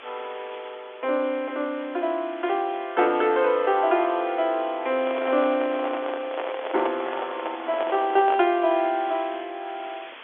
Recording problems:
phone line; 260 Hz to 3.5 kHz, G.711
hiss; SNR 18 dB
microphone handling noise; from 5 to 8.5 s; peak -2 dB vs average level

